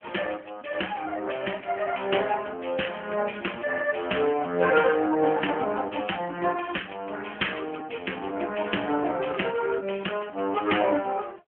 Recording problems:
telephone audio; 240 Hz to 3.1 kHz, AMR-NB

